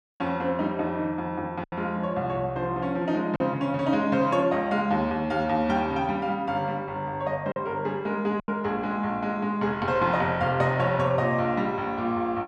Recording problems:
packet loss; 2% of the sound replaced, filled with silence

